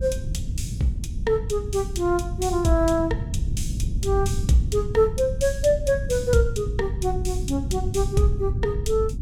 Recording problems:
low-frequency rumble; below 110 Hz, SNR 5 dB

